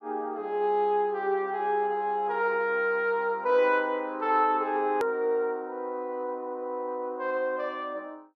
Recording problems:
hard cut with a click; at 5 s

